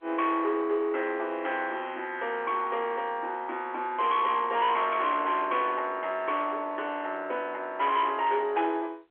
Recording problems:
phone line; 300 Hz to 3.5 kHz, G.711
distorted audio; soft clipping, signal-to-distortion ratio 11 dB

